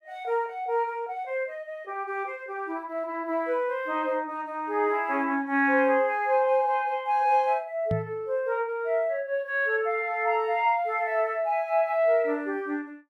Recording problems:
microphone thump; at 8 s; peak +1 dB vs average level

